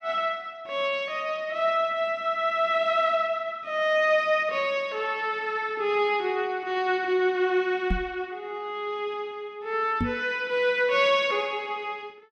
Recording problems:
knock on the microphone; at 8 s and at 10 s; peak +2 dB vs average level

